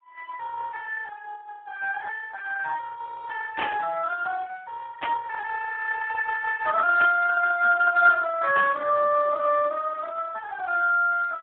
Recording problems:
telephone audio; 930 Hz to 2.6 kHz, Speex
static burst; 4 times, first at 3.5 s; peak -2 dB vs average level

